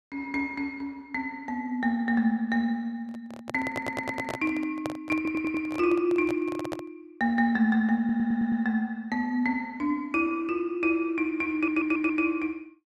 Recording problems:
microphone handling noise; from 3 to 7 s; peak -2 dB vs average level
audio stuttering; 4 times, first at 3.5 s

